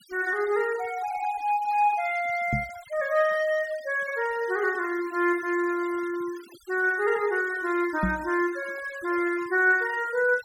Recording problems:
denoising artefacts; signal-to-artefact ratio 20 dB
microphone thump; at 2.5 s and at 8 s; peak +3 dB vs average level

